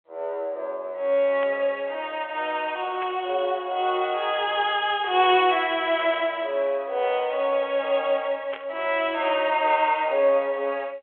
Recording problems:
phone line; 340 Hz to 3.6 kHz, G.726
burst of static; 4 times, first at 1.5 s; peak -8 dB vs average level

